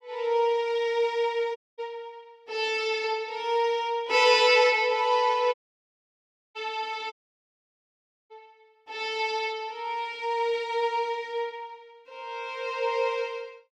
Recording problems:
audio cutting out; at 1.5 s, at 5.5 s for 1 s and at 7 s for 1 s

